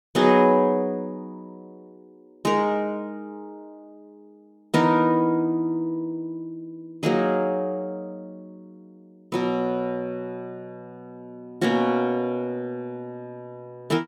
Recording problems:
none

